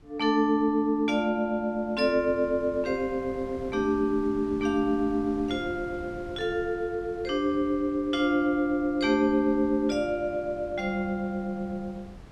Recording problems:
wind noise; below 300 Hz, SNR 19 dB

